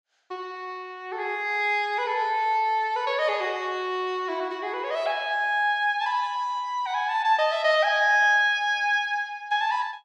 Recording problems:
none

